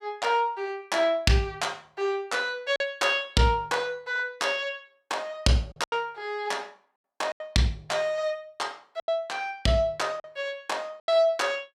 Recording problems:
packet loss; 4% of the sound replaced, filled with silence

